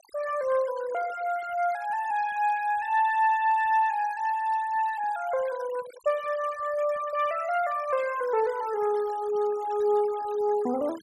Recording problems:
denoising artefacts; signal-to-artefact ratio 20 dB

